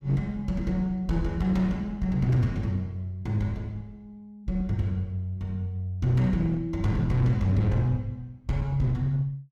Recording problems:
distorted audio; hard clipping, uneven, signal-to-distortion ratio 11 dB

